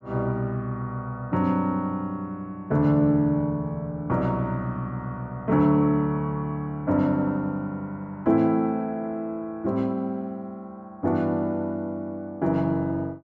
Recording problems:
none

